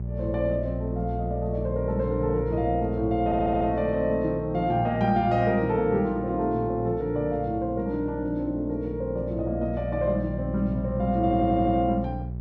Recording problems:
hum; 60 Hz, harmonics up to 420 Hz, SNR 8 dB
audio stuttering; at 3.5 s and at 11 s

